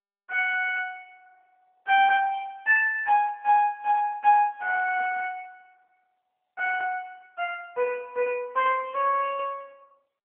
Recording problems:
telephone audio; 280 Hz to 3.1 kHz, AMR-NB

